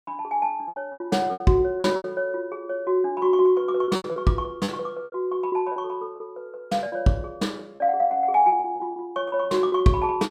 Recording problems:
packet loss; 11% of the sound replaced, filled with repeated pitch periods

